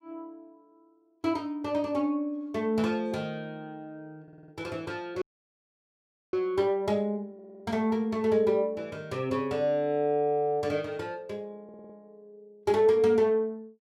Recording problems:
stutter; at 4 s, at 7.5 s and at 12 s
dropout; at 5 s for 1 s

